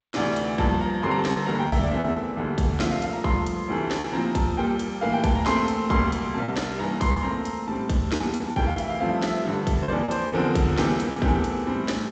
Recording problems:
lossy compression; G.722, log-spectral distance 2 dB, nothing above 7.8 kHz
lost packets; 5% of the sound replaced, filled with repeated pitch periods

